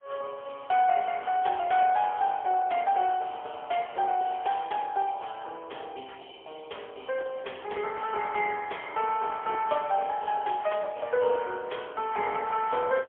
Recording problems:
phone line; 370 Hz to 3.3 kHz, AMR-NB, then MP3

